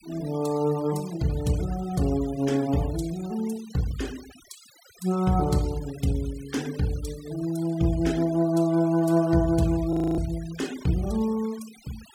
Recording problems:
noise reduction artefacts; signal-to-artefact ratio 19 dB
audio freezing; at 10 s

